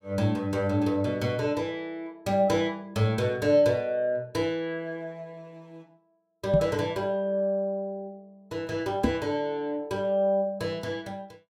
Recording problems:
microphone thump; at 6.5 s and at 9 s; peak +7 dB vs average level

